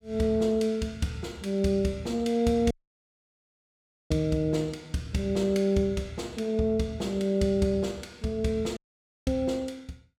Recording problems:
audio cutting out; at 2.5 s for 1.5 s and at 9 s for 0.5 s

